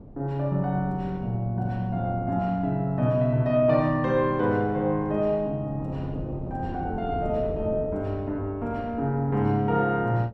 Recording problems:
wind noise; below 310 Hz, SNR 14 dB

